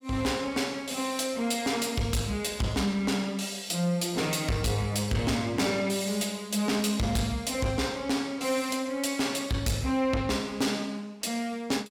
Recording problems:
distorted audio; soft clipping, signal-to-distortion ratio 11 dB

